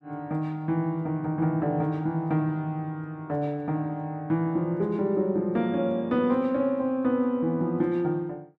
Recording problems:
none

